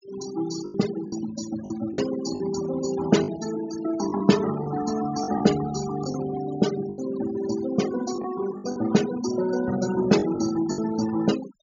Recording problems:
treble cut off; nothing above 7.1 kHz
denoising artefacts; signal-to-artefact ratio 11 dB
lost packets; 7% of the sound replaced, filled with the last packet

